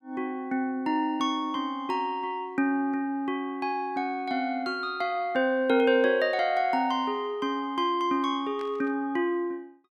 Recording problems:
burst of static; at 8.5 s; peak -14 dB vs average level

